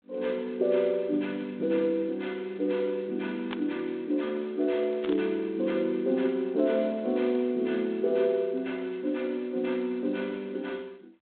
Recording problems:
phone line; 220 Hz to 3.9 kHz, G.726
static burst; at 3.5 s and at 5 s; peak -3 dB vs average level

